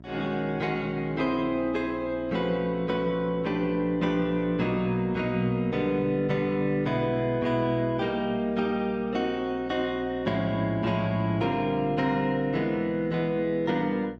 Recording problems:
hum; 60 Hz, harmonics up to 720 Hz, SNR 18 dB

